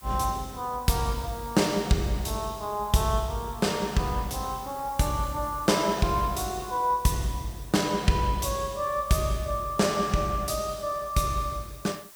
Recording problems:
hiss; slope -1 dB per octave, SNR 20 dB

